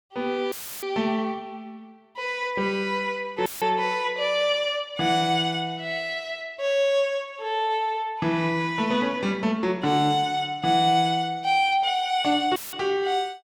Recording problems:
dropout; at 0.5 s, at 3.5 s and at 13 s; filled with static

